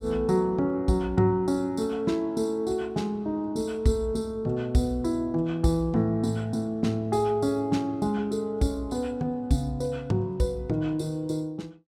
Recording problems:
none

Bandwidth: 16 kHz